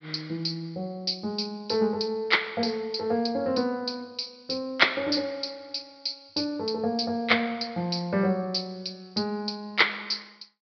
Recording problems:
treble cut off; nothing above 5.5 kHz

